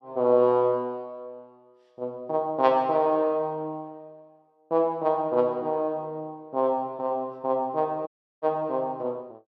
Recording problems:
audio cutting out; at 8 s

